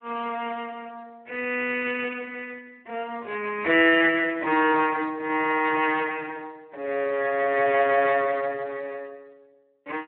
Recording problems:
telephone audio; 280 Hz to 3 kHz, Speex

